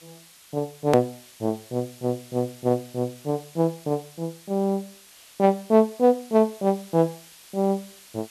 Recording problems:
background hiss; slope +2 dB per octave, SNR 22 dB
click at an edit; at 1 s

